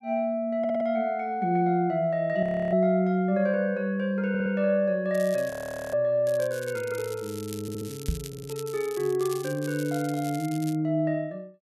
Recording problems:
stutter; 4 times, first at 0.5 s
frozen audio; at 2.5 s and at 5.5 s
crackling; at 5 s and from 6.5 to 11 s; loose cable, SNR 17 dB
knock on the microphone; at 8 s; peak +2 dB vs average level

